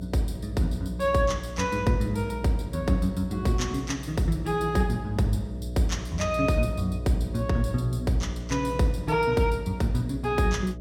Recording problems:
hum; 60 Hz, harmonics up to 660 Hz, SNR 10 dB

